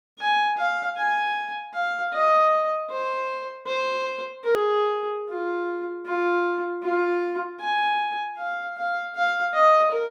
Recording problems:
hard cut with a click; at 4.5 s

